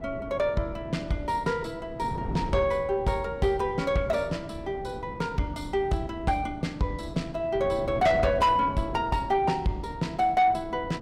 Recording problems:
distortion; soft clipping, signal-to-distortion ratio 12 dB
wind noise; below 340 Hz, SNR 12 dB

